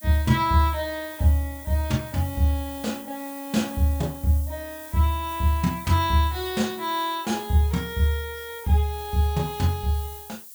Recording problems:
hiss; SNR 16 dB

